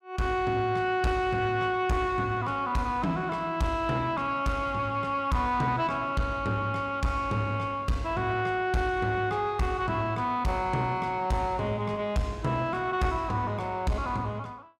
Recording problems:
distortion; soft clipping, signal-to-distortion ratio 11 dB

